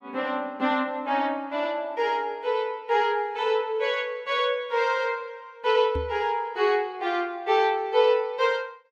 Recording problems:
microphone thump; at 6 s; peak -4 dB vs average level

